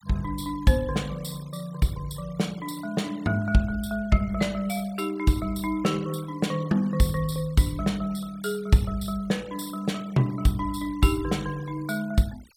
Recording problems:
noise reduction artefacts; signal-to-artefact ratio 22 dB

